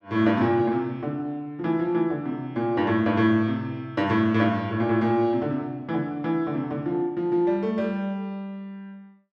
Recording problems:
none

